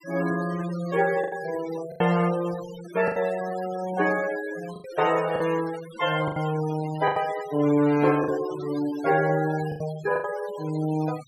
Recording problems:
noise reduction artefacts; signal-to-artefact ratio 14 dB
lost packets; 6% of the sound replaced, filled with the last packet

